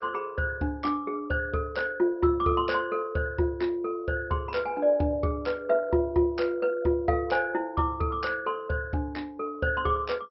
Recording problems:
lossy codec; MP2, log-spectral distance 3 dB, nothing above 5.5 kHz

